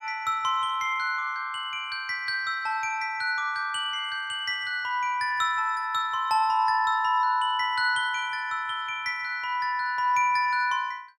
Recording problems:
none

